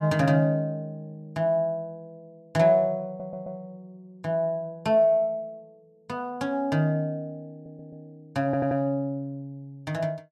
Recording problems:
stutter; at 3 s, at 7.5 s and at 8.5 s

